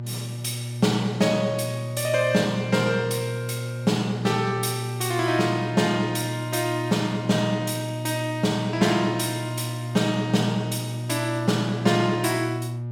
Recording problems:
hum; 60 Hz, harmonics up to 600 Hz, SNR 7 dB

